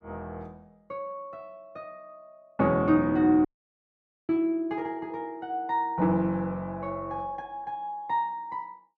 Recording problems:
audio cutting out; at 3.5 s for 1 s

